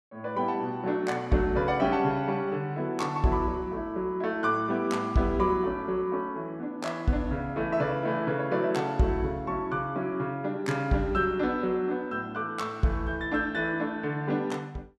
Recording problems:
none

